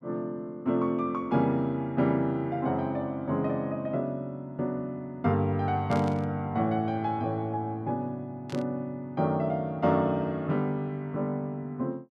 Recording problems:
burst of static; at 6 s and at 8.5 s; peak -10 dB vs average level

